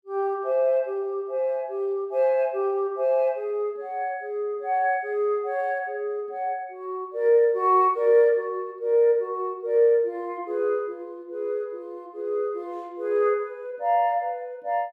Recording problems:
none

